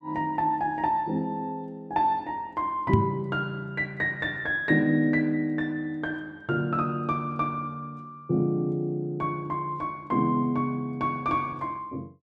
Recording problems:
microphone thump; at 3 s; peak +9 dB vs average level

